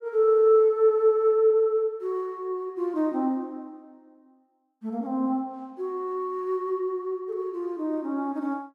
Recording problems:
none

